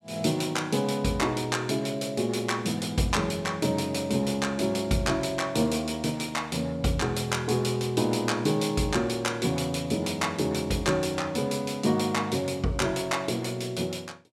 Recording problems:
none

